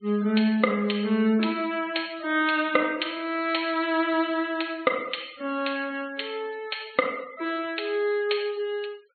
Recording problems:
treble cut off; nothing above 4.3 kHz
denoising artefacts; signal-to-artefact ratio 23 dB

